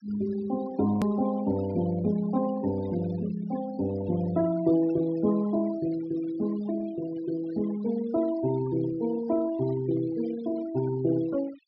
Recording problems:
treble missing; nothing above 5.5 kHz
noise reduction artefacts; signal-to-artefact ratio 17 dB
click at an edit; at 1 s

